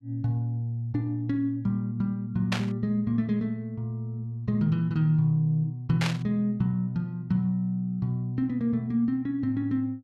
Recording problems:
burst of static; at 2.5 s and at 6 s; peak +2 dB vs average level

